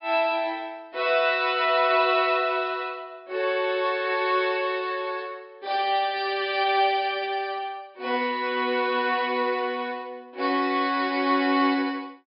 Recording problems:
treble missing; nothing above 5.5 kHz

